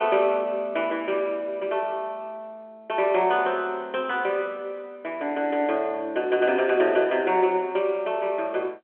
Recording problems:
telephone audio; 260 Hz to 3.4 kHz, G.711

